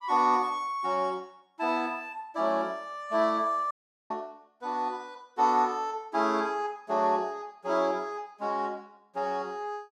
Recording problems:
audio cutting out; at 3.5 s

